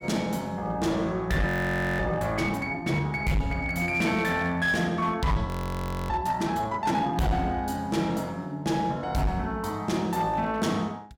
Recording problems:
distorted audio; hard clipping, uneven, signal-to-distortion ratio 10 dB
audio freezing; at 1.5 s for 0.5 s and at 5.5 s for 0.5 s

